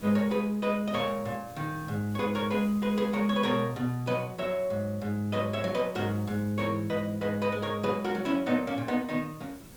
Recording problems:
background hiss; SNR 21 dB

